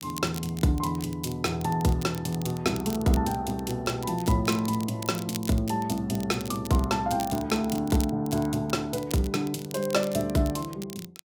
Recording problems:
crackling; vinyl, SNR 15 dB

